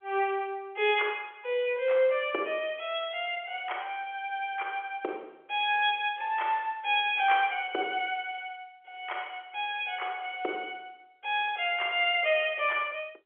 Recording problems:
telephone audio; 300 Hz to 3.4 kHz, G.711

